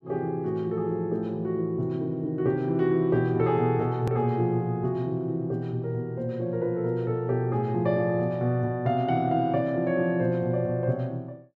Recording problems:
edit click; at 4 s

